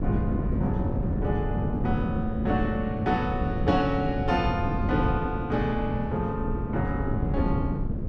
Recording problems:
wind noise; below 230 Hz, SNR 0 dB

